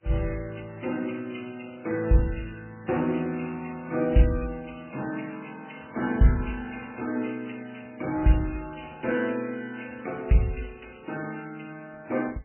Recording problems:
codec artefacts; MP3, then MP3, log-spectral distance 7 dB, nothing above 2.8 kHz

